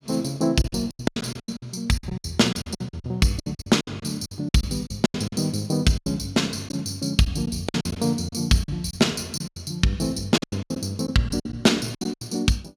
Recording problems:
packet loss; 16% of the sound replaced, filled with silence

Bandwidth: 17.5 kHz